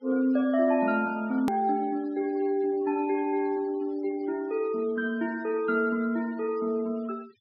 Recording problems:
treble missing; nothing above 5.5 kHz
noise reduction artefacts; signal-to-artefact ratio 23 dB
hard cut with a click; at 1.5 s

